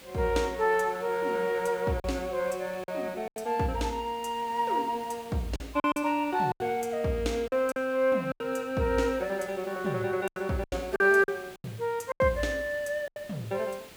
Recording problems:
hiss; slope -2 dB per octave, SNR 21 dB
lost packets; 7% of the sound replaced, filled with silence

